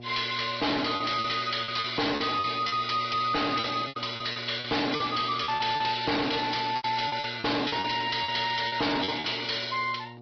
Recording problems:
low-pass filter; nothing above 5.3 kHz
lossy compression; G.722, then Vorbis, log-spectral distance 8 dB
distortion; hard clipping, signal-to-distortion ratio 6 dB
electrical hum; 60 Hz, harmonics up to 1.1 kHz, SNR 18 dB
packet loss; 11% of the sound replaced, filled with repeated pitch periods

